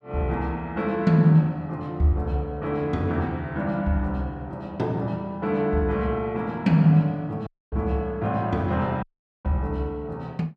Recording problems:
audio cutting out; at 7.5 s and at 9 s

